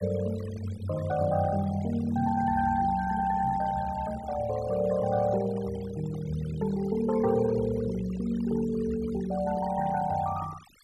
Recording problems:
noise reduction artefacts; signal-to-artefact ratio 16 dB

